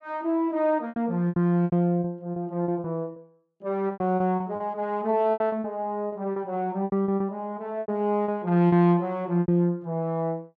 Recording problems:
packet loss; 13% of the sound replaced, filled with repeated pitch periods

